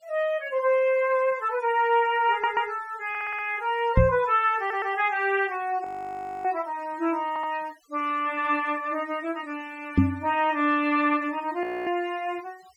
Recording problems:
denoising artefacts; signal-to-artefact ratio 26 dB
stutter; 4 times, first at 2.5 s
knock on the microphone; at 4 s and at 10 s; peak +10 dB vs average level
audio freezing; at 6 s for 0.5 s and at 12 s

